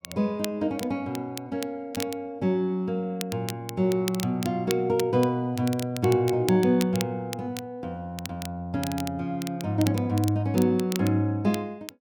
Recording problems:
crackle; vinyl, SNR 13 dB

